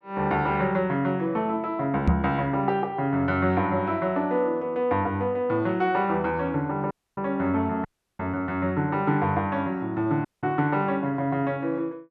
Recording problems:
microphone bump; at 2 s; peak +7 dB vs average level
audio cutting out; at 7 s, at 8 s and at 10 s

